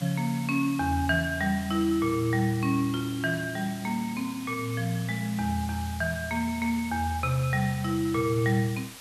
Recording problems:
background hiss; slope 0 dB per octave, SNR 15 dB

